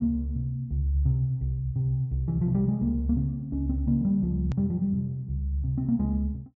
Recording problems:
treble missing; nothing above 8 kHz
click at an edit; at 4.5 s

